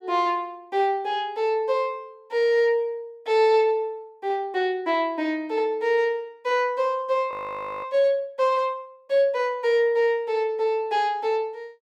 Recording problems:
frozen audio; at 7.5 s for 0.5 s

